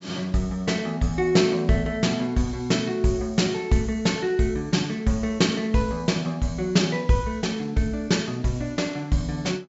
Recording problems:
treble missing; nothing above 8 kHz

